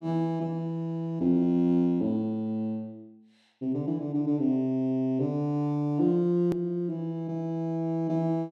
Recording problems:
hard cut with a click; at 6.5 s

